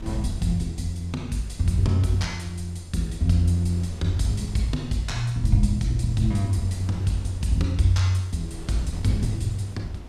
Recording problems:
wind on the microphone; below 180 Hz, SNR 16 dB

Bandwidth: 13 kHz